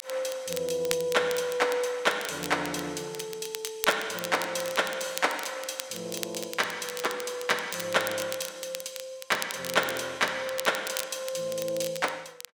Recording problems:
crackle; vinyl, SNR 9 dB

